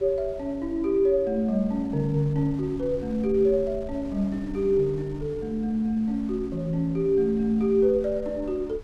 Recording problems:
wind noise; below 120 Hz, SNR 19 dB

